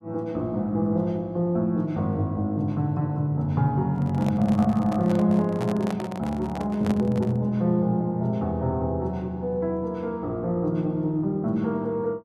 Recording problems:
microphone handling noise; from 4 to 7.5 s; peak -4 dB vs average level

